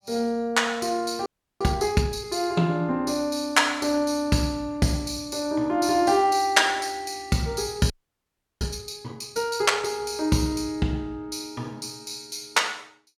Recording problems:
audio freezing; at 1.5 s and at 8 s for 0.5 s

